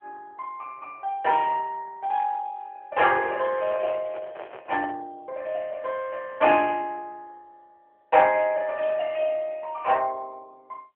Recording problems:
telephone audio; 320 Hz to 3.2 kHz, AMR-NB
microphone handling noise; from 3.5 to 5 s; peak -8 dB vs average level

